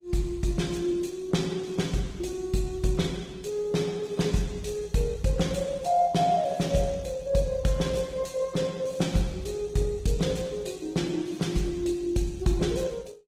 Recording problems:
lossy compression; Opus, log-spectral distance 4 dB, nothing above 18.9 kHz

